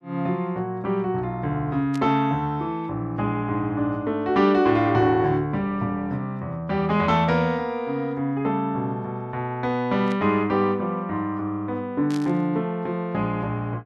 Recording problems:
burst of static; at 2 s, at 10 s and at 12 s; peak -10 dB vs average level

